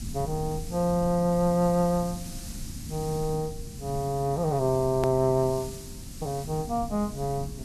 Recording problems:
background hiss; slope +2 dB per octave, SNR 17 dB
rumble; below 190 Hz, SNR 14 dB
hard cut with a click; at 5 s

